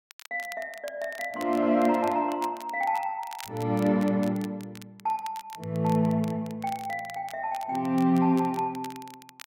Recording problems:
crackle; vinyl, SNR 20 dB

